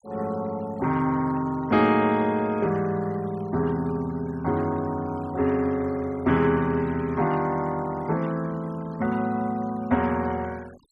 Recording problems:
denoising artefacts; signal-to-artefact ratio 24 dB

